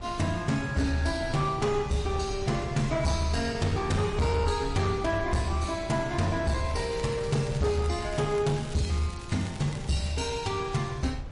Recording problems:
lossy codec; MP3, log-spectral distance 3 dB, nothing above 10.4 kHz
distortion; hard clipping, signal-to-distortion ratio 12 dB
wind noise; below 140 Hz, SNR 12 dB
crackle; from 6.5 to 10 s; loose cable, SNR 18 dB

